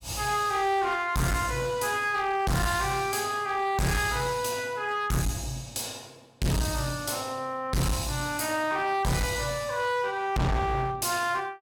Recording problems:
distortion; hard clipping, uneven, signal-to-distortion ratio 5 dB

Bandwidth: 17.5 kHz